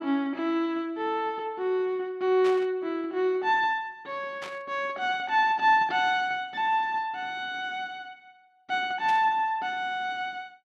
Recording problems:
burst of static; at 2.5 s, at 4.5 s and at 9 s; peak -8 dB vs average level

